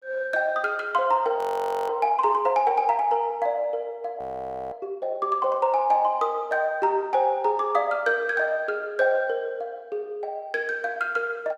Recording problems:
audio freezing; at 1.5 s for 0.5 s and at 4 s for 0.5 s

